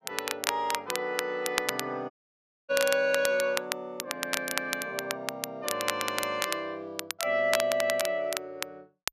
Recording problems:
crackle; vinyl, SNR 4 dB
dropout; at 2 s for 0.5 s

